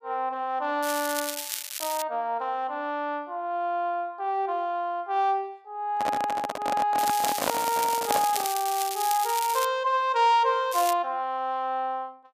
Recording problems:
crackle; from 1 to 2 s, from 7 to 9.5 s and at 11 s; loose cable, SNR 6 dB
microphone handling noise; from 6 to 8.5 s; peak +4 dB vs average level

